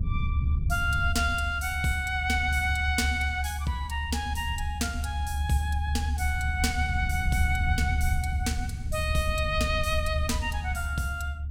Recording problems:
low-frequency rumble; below 78 Hz, strongest tone 74 Hz, SNR 1 dB

